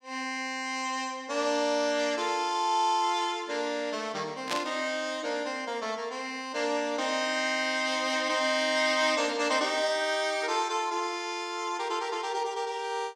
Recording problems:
burst of static; at 4.5 s; peak +2 dB vs average level

